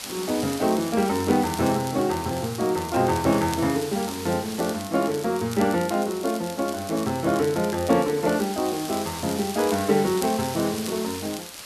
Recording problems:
background hiss; slope +1 dB per octave, SNR 12 dB
crackle; vinyl, SNR 16 dB

